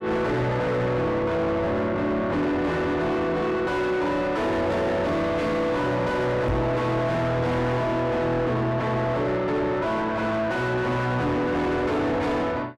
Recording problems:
distorted audio; soft clipping, signal-to-distortion ratio 5 dB
knock on the microphone; at 6.5 s; peak +5 dB vs average level

